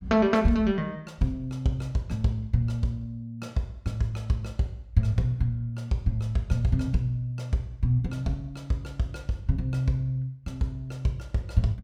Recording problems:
none

